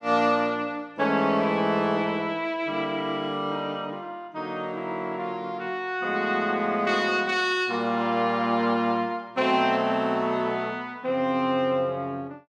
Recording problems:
none

